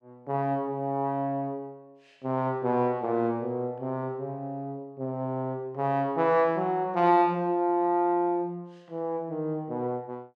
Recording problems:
none

